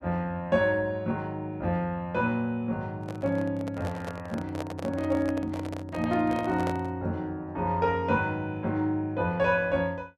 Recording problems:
microphone handling noise; from 3 to 7 s; peak -3 dB vs average level

